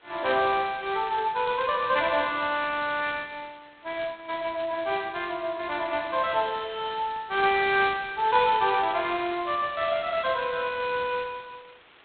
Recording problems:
telephone audio; 300 Hz to 3.9 kHz, G.726
hiss; SNR 28 dB

